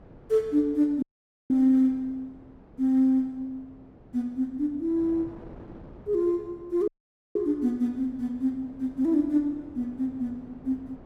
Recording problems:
wind on the microphone; below 460 Hz, SNR 23 dB
dropout; at 1 s and at 7 s

